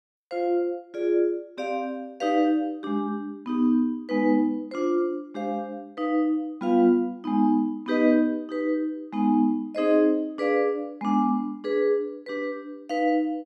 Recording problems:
none

